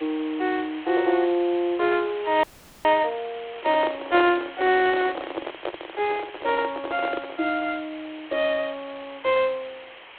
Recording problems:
phone line; 280 Hz to 3.4 kHz, G.726
hiss; SNR 18 dB
frozen audio; at 2.5 s
handling noise; from 3.5 to 7.5 s; peak -2 dB vs average level

